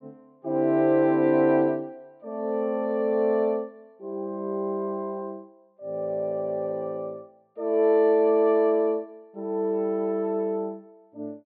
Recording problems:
treble cut off; nothing above 4.7 kHz

